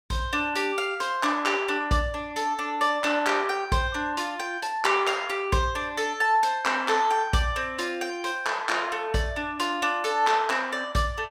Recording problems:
none

